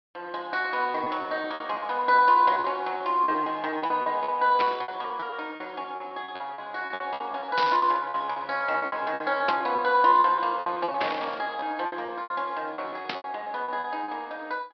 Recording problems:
treble cut off; nothing above 5.5 kHz
packet loss; 17% of the sound replaced, filled with repeated pitch periods
burst of static; 5 times, first at 4.5 s; peak 0 dB vs average level

